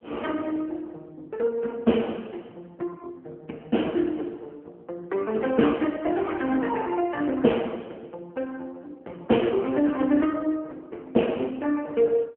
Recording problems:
phone line; 220 Hz to 3.2 kHz, AMR-NB

